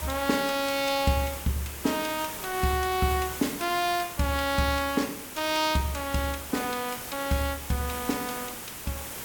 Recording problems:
hiss; slope -2 dB per octave, SNR 8 dB

